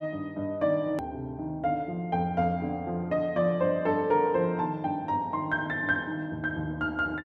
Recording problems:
hard cut with a click; at 1 s

